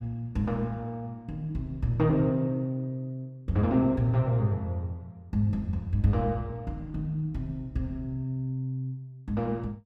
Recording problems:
none

